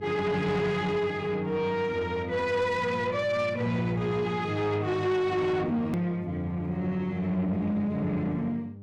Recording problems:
distortion; soft clipping, signal-to-distortion ratio 11 dB
hum; 50 Hz, harmonics up to 600 Hz, SNR 17 dB
edit click; at 6 s

